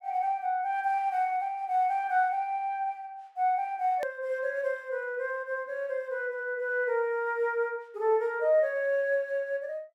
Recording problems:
hard cut with a click; at 4 s

